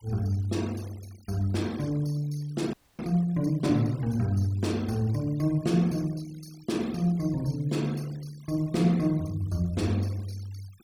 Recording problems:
denoising artefacts; signal-to-artefact ratio 23 dB
audio freezing; at 2.5 s

